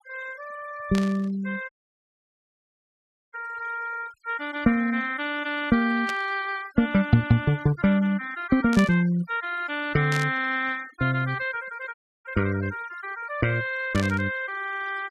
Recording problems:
denoising artefacts; signal-to-artefact ratio 21 dB
static burst; 5 times, first at 1 s; peak -4 dB vs average level
audio cutting out; at 1.5 s for 1.5 s and at 12 s

